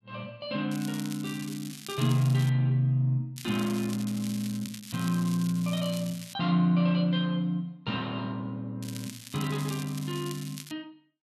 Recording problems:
crackle; from 0.5 to 2.5 s, from 3.5 to 6.5 s and from 9 to 11 s; loose cable, SNR 14 dB

